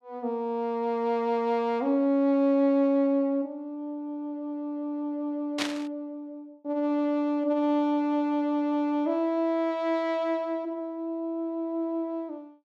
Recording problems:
static burst; at 5.5 s; peak +3 dB vs average level

